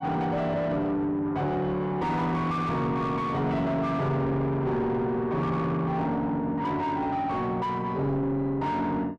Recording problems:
distorted audio; soft clipping, signal-to-distortion ratio 8 dB

